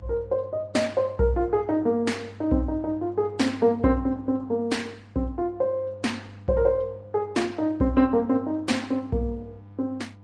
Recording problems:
codec artefacts; MP3, then Opus, log-spectral distance 2 dB
hum; 50 Hz, harmonics up to 700 Hz, SNR 19 dB

